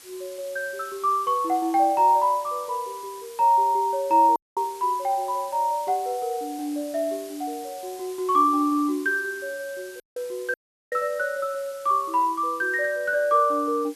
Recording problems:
hiss; slope +1 dB per octave, SNR 21 dB
audio cutting out; at 4.5 s, at 10 s and at 11 s

